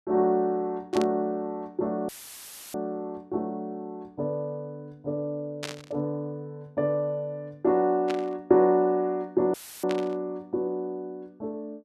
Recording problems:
burst of static; 4 times, first at 1 s; peak -2 dB vs average level
audio cutting out; at 2 s for 0.5 s and at 9.5 s; filled with static

